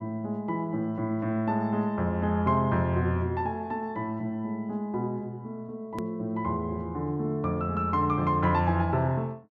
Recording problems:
low-pass filter; nothing above 8 kHz
edit click; at 6 s

